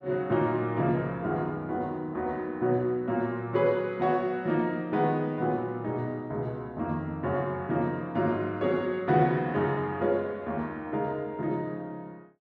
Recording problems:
none

